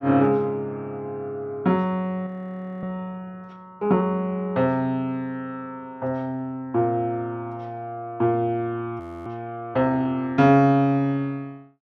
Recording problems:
frozen audio; at 2.5 s for 0.5 s and at 9 s

